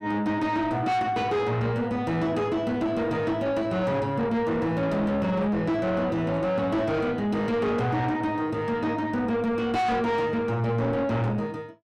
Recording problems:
distorted audio; soft clipping, signal-to-distortion ratio 7 dB

